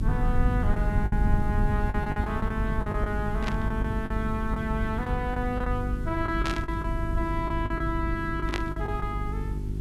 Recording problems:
hum; 50 Hz, harmonics up to 400 Hz, SNR 3 dB
background hiss; SNR 20 dB
rumble; below 110 Hz, SNR 0 dB
lost packets; 9% of the sound replaced, filled with the last packet
static burst; at 3.5 s, at 6.5 s and at 8.5 s; peak +3 dB vs average level

